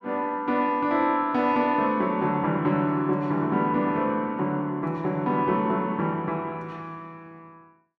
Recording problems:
none

